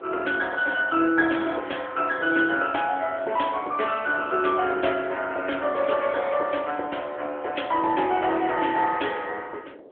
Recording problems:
telephone audio; 300 Hz to 3.4 kHz, AMR-NB
wind on the microphone; below 570 Hz, SNR 19 dB

